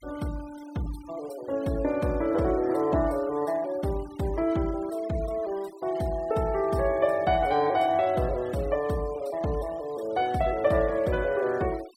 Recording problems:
noise reduction artefacts; signal-to-artefact ratio 21 dB

